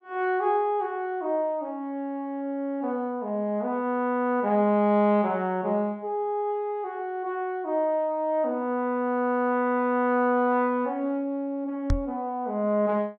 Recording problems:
microphone bump; at 12 s; peak +3 dB vs average level

